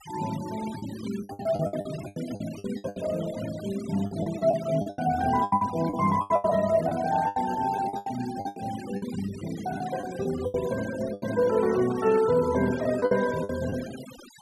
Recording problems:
noise reduction artefacts; signal-to-artefact ratio 16 dB
lost packets; 14% of the sound replaced, filled with the last packet

